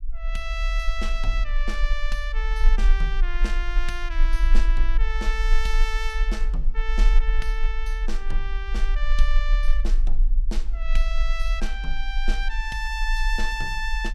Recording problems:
low-frequency rumble; below 38 Hz, strongest tone 26 Hz, SNR -5 dB

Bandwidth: 15.5 kHz